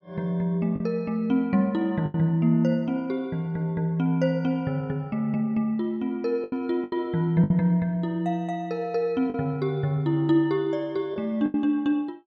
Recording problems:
lost packets; 4% of the sound replaced, filled with the last packet

